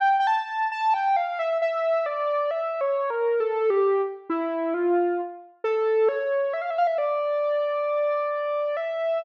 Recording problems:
none

